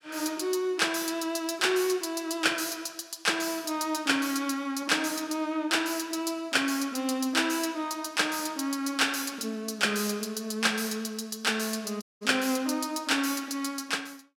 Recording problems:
dropout; at 12 s

